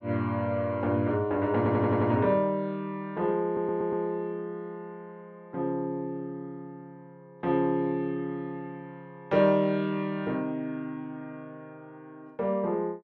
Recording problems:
audio stuttering; at 1.5 s and at 3.5 s

